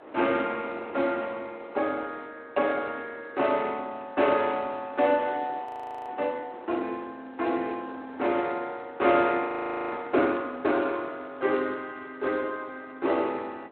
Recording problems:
phone line; 240 Hz to 3.3 kHz, Speex
wind on the microphone; below 970 Hz, SNR 19 dB
frozen audio; at 5.5 s and at 9.5 s

